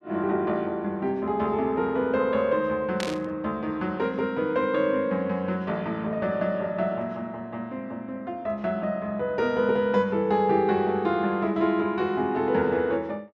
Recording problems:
static burst; at 3 s; peak -3 dB vs average level

